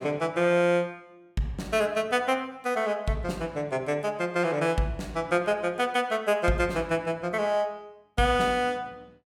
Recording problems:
none

